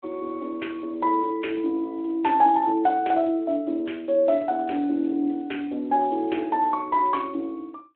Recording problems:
phone line; 260 Hz to 3.3 kHz, Speex

